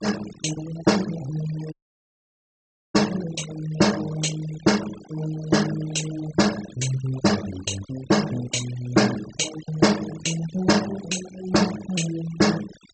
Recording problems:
low-pass filter; nothing above 8 kHz
noise reduction artefacts; signal-to-artefact ratio 13 dB
audio cutting out; at 1.5 s for 1 s

